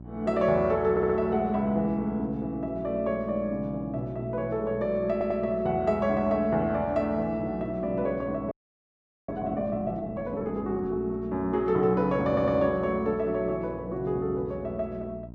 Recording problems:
hum; 60 Hz, harmonics up to 720 Hz, SNR 16 dB
audio stuttering; at 1 s, at 5 s and at 12 s
audio freezing; at 8.5 s for 1 s

